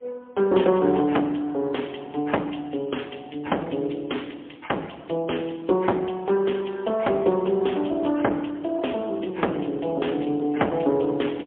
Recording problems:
phone line; 260 Hz to 3.3 kHz, AMR-NB, then MP3

